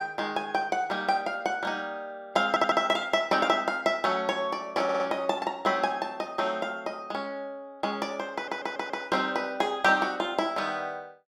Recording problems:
audio stuttering; at 2.5 s, at 5 s and at 8.5 s

